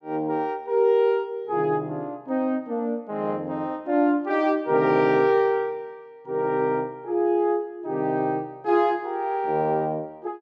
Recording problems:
none

